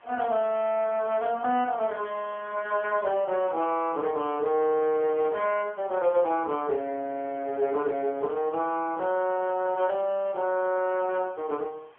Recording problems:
telephone audio; 260 Hz to 3.3 kHz, AMR-NB
background hiss; SNR 28 dB

